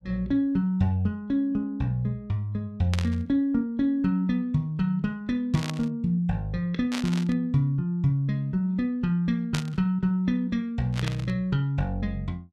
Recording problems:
static burst; 5 times, first at 3 s; peak -1 dB vs average level

